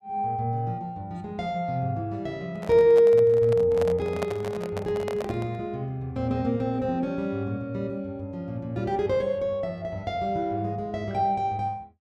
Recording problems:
handling noise; from 2.5 to 5.5 s; peak -1 dB vs average level

